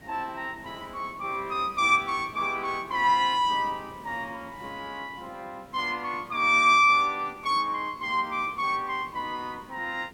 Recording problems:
background hiss; SNR 24 dB

